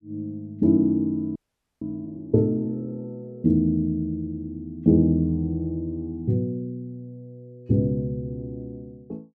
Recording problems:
audio freezing; at 1.5 s

